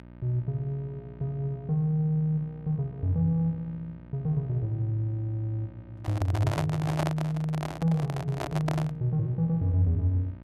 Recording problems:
hum; 60 Hz, harmonics up to 1.6 kHz, SNR 18 dB
microphone handling noise; from 6 to 9 s; peak +2 dB vs average level

